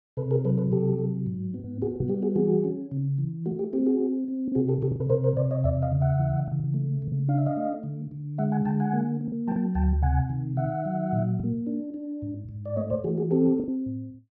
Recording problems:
packet loss; 4% of the sound replaced, filled with the last packet
microphone bump; at 2 s; peak +1 dB vs average level

